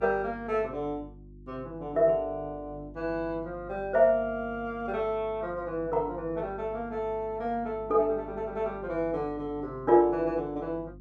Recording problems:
electrical hum; 50 Hz, harmonics up to 350 Hz, SNR 19 dB

